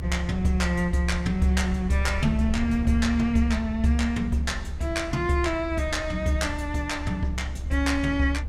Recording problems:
rumble; below 72 Hz, strongest tone 68 Hz, SNR 7 dB

